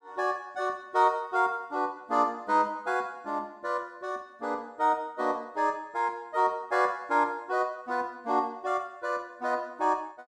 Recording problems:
none

